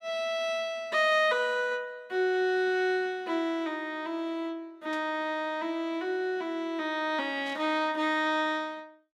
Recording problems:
burst of static; at 5 s and at 7.5 s; peak -13 dB vs average level

